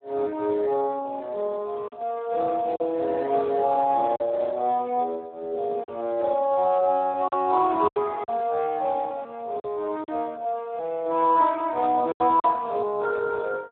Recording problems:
telephone audio; 300 Hz to 2.6 kHz, Speex
packet loss; 4% of the sound replaced, filled with silence
static burst; at 10 s; peak -23 dB vs average level

